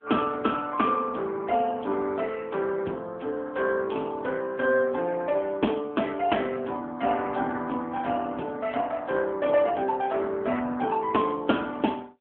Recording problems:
phone line; 260 Hz to 3.3 kHz, AMR-NB

